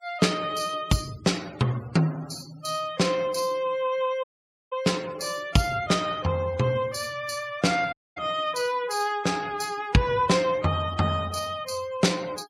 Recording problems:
noise reduction artefacts; signal-to-artefact ratio 21 dB
audio cutting out; at 4 s and at 8 s

